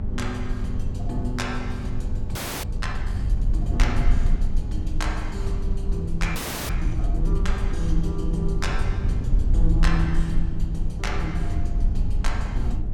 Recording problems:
hum; 50 Hz, harmonics up to 800 Hz, SNR 7 dB
rumble; below 60 Hz, SNR -4 dB
frozen audio; at 2.5 s and at 6.5 s

